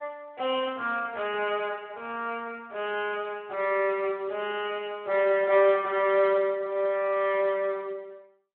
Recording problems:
telephone audio; 300 Hz to 3.3 kHz, Speex

